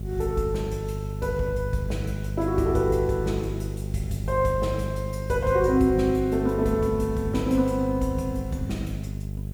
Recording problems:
hum; 50 Hz, harmonics up to 450 Hz, SNR 6 dB
background hiss; slope -1 dB per octave, SNR 29 dB

